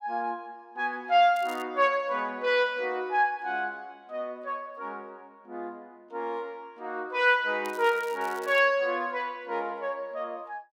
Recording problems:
crackling; at 1.5 s and at 7.5 s; loose cable, SNR 22 dB

